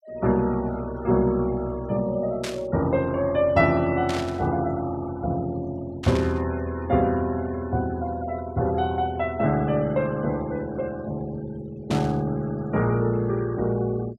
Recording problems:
denoising artefacts; signal-to-artefact ratio 23 dB
burst of static; 4 times, first at 2.5 s; peak -4 dB vs average level

